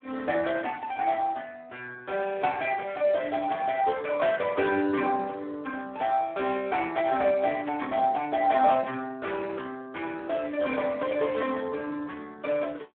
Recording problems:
telephone audio; 190 Hz to 3.3 kHz, Speex

